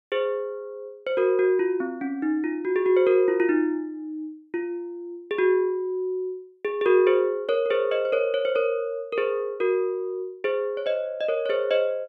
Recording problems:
none

